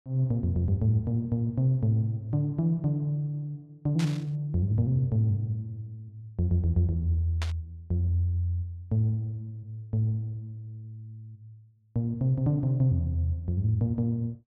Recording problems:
static burst; at 4 s and at 7.5 s; peak -5 dB vs average level

